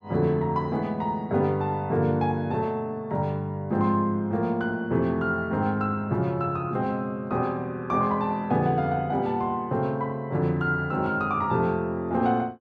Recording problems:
none

